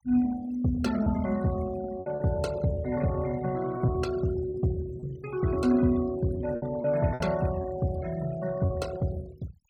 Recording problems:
noise reduction artefacts; signal-to-artefact ratio 18 dB
packet loss; 5% of the sound replaced, filled with repeated pitch periods

